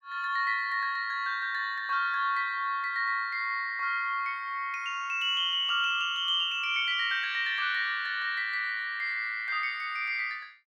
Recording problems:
none

